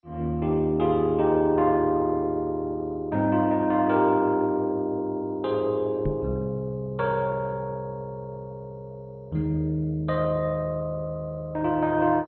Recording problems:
lossy codec; MP2, then MP2, log-spectral distance 2 dB
knock on the microphone; at 6 s; peak 0 dB vs average level

